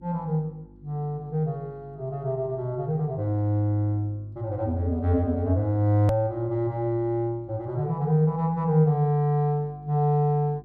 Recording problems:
mains hum; 50 Hz, harmonics up to 350 Hz, SNR 25 dB
edit click; at 6 s

